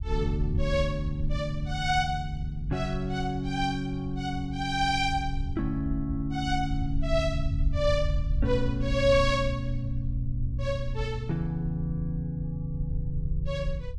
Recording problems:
low-frequency rumble; below 74 Hz, SNR 5 dB

